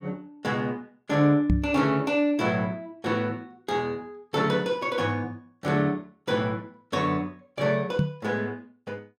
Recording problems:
microphone thump; at 1.5 s and at 8 s; peak +7 dB vs average level

